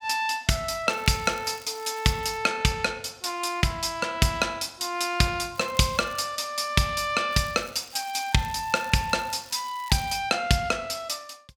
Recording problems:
crackling; from 1 to 2.5 s, at 5.5 s and from 7.5 to 10 s; loose cable, SNR 22 dB

